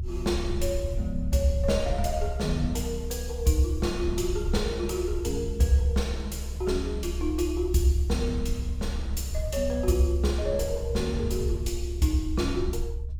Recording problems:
rumble; below 70 Hz, SNR 4 dB

